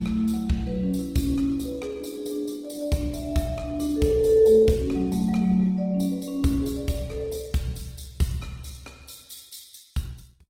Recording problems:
codec artefacts; Opus, log-spectral distance 4 dB, nothing above 16.5 kHz

